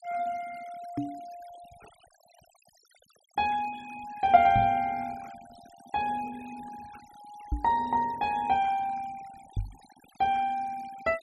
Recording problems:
noise reduction artefacts; signal-to-artefact ratio 23 dB
microphone thump; 4 times, first at 1 s; peak +1 dB vs average level

